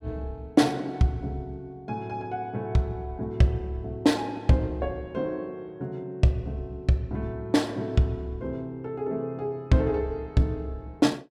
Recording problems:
none

